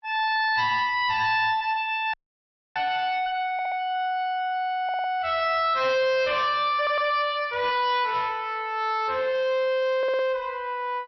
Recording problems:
codec artefacts; MP3, log-spectral distance 2 dB, nothing above 4.9 kHz
distortion; soft clipping, signal-to-distortion ratio 11 dB
audio cutting out; at 2 s for 0.5 s
stutter; 4 times, first at 3.5 s

